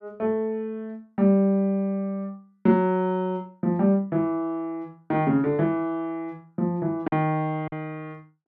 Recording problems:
lost packets; 1.1% of the sound replaced, filled with silence

